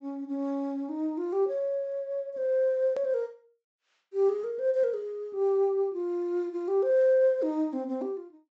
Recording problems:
treble cut off; nothing above 8 kHz
hard cut with a click; at 3 s

